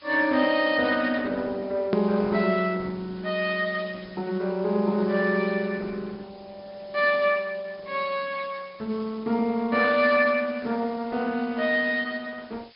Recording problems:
treble missing; nothing above 4.6 kHz
lossy compression; Opus, log-spectral distance 7 dB
background hiss; SNR 27 dB
hard cut with a click; at 2 s

